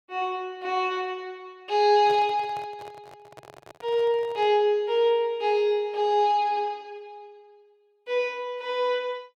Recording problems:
handling noise; from 2 to 4.5 s; peak -12 dB vs average level

